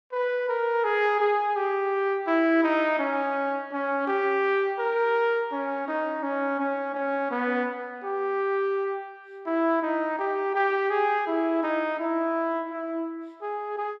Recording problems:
none

